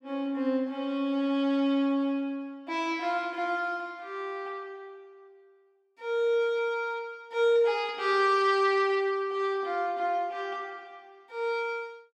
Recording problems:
none

